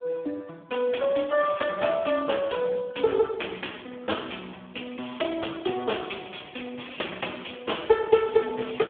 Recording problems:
phone line; 280 Hz to 3.5 kHz, Speex

